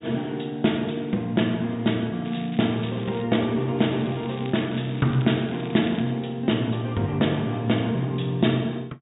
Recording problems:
low-pass filter; nothing above 4 kHz
crackling; at 2.5 s and from 4 to 6 s; loose cable, SNR 19 dB

